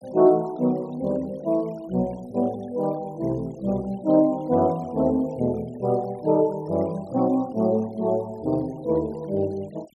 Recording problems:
noise reduction artefacts; signal-to-artefact ratio 27 dB

